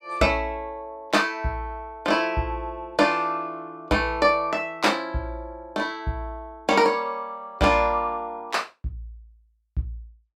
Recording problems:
none

